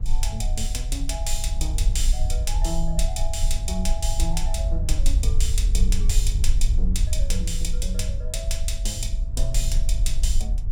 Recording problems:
rumble; below 50 Hz, strongest tone 24 Hz, SNR -4 dB

